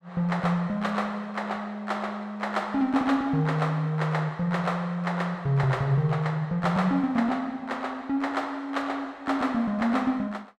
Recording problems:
none

